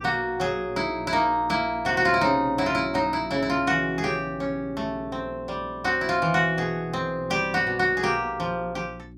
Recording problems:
hum; 60 Hz, harmonics up to 360 Hz, SNR 20 dB

